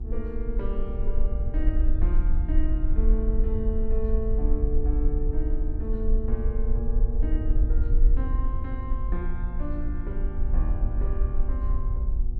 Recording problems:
mains hum; 60 Hz, harmonics up to 840 Hz, SNR 9 dB
rumble; below 50 Hz, strongest tone 22 Hz, SNR -8 dB

